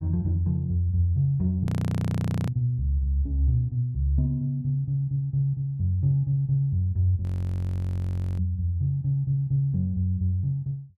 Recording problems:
frozen audio; at 1.5 s for 1 s and at 7 s for 1 s

